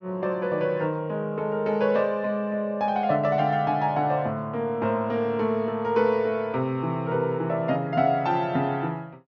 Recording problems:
treble missing; nothing above 6.7 kHz

